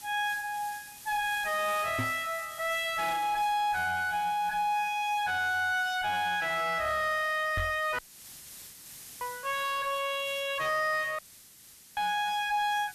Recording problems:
distorted audio; soft clipping, signal-to-distortion ratio 9 dB
background hiss; SNR 17 dB
microphone bump; at 2 s and at 7.5 s; peak +2 dB vs average level
dropout; at 8 s for 1 s and at 11 s for 1 s

